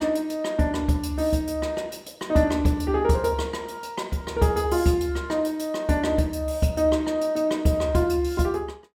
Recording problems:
none

